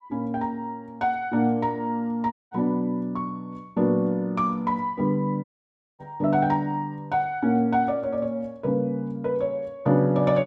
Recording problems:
audio cutting out; at 2.5 s and at 5.5 s for 0.5 s

